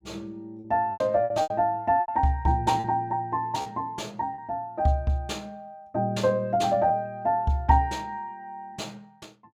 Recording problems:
packet loss; 6% of the sound replaced, filled with repeated pitch periods

